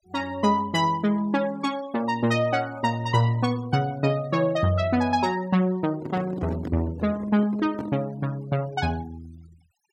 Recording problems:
noise reduction artefacts; signal-to-artefact ratio 25 dB
handling noise; from 6 to 8 s; peak -5 dB vs average level

